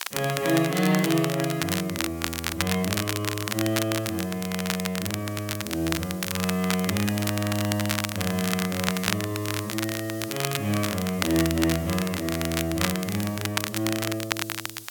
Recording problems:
background hiss; SNR 16 dB
crackling; vinyl, SNR 3 dB

